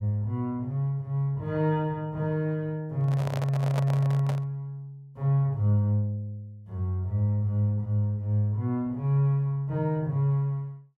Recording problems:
handling noise; from 3 to 4.5 s; peak -2 dB vs average level

